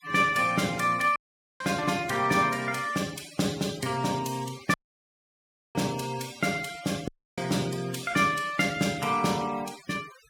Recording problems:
noise reduction artefacts; signal-to-artefact ratio 17 dB
audio cutting out; at 1 s, at 4.5 s for 1 s and at 7 s

